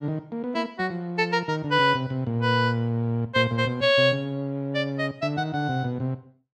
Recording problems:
none

